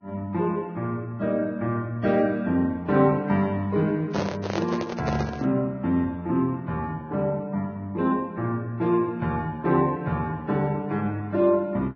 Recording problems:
lossy codec; Vorbis, log-spectral distance 2 dB
handling noise; from 4 to 5.5 s; peak 0 dB vs average level

